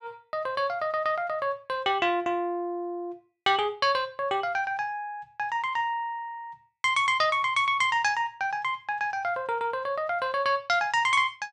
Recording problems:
none

